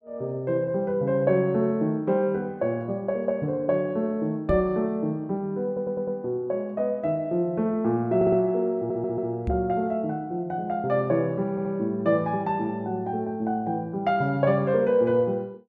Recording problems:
microphone bump; at 4.5 s and at 9.5 s; peak 0 dB vs average level
audio stuttering; 4 times, first at 5.5 s

